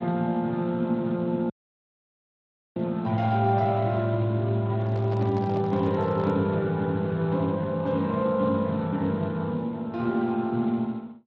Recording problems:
lossy codec; Speex, log-spectral distance 2 dB
dropout; at 1.5 s for 1.5 s
microphone handling noise; from 5 to 6.5 s; peak -7 dB vs average level

